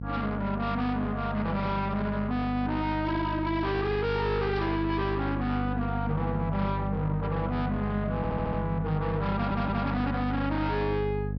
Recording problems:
treble cut off; nothing above 5.5 kHz
distortion; soft clipping, signal-to-distortion ratio 7 dB
hum; 50 Hz, harmonics up to 500 Hz, SNR 4 dB
burst of static; at 4.5 s; peak -10 dB vs average level
stutter; at 8 s and at 9.5 s

